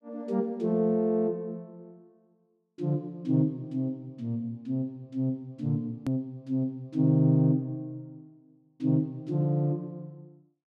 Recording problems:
click at an edit; at 6 s

